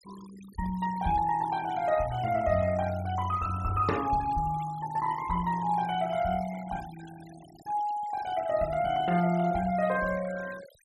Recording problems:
noise reduction artefacts; signal-to-artefact ratio 19 dB

